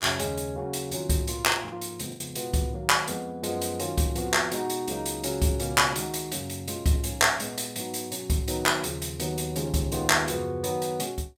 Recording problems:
packet loss; 1.4% of the sound replaced, filled with the last packet

